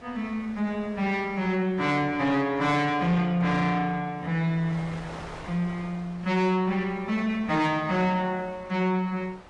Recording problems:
lossy codec; AAC, log-spectral distance 2 dB, nothing above 10.1 kHz
distorted audio; soft clipping, signal-to-distortion ratio 10 dB
wind noise; below 1.6 kHz, SNR 19 dB

